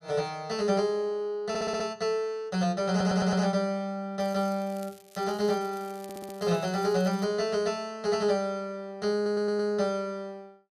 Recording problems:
stutter; 4 times, first at 1.5 s
crackle; from 4 to 7.5 s; loose cable, SNR 24 dB

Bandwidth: 14.5 kHz